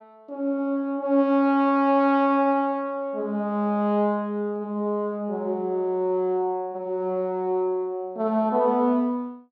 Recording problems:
none

